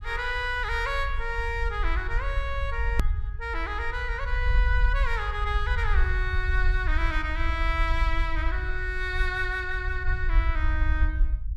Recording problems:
rumble; below 60 Hz, SNR 0 dB
click at an edit; at 3 s

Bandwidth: 14.5 kHz